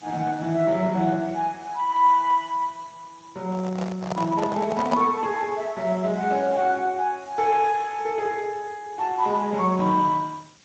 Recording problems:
codec artefacts; Speex, log-spectral distance 4 dB
background hiss; slope 0 dB per octave, SNR 27 dB
handling noise; from 3.5 to 5 s; peak +1 dB vs average level

